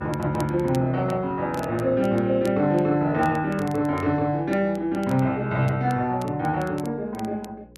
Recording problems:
electrical hum; 60 Hz, harmonics up to 540 Hz, SNR 25 dB
crackling; vinyl, SNR 24 dB

